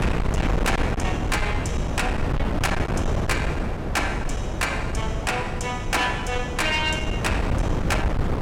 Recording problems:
distorted audio; soft clipping, signal-to-distortion ratio 11 dB
wind on the microphone; below 380 Hz, SNR 0 dB

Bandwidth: 16 kHz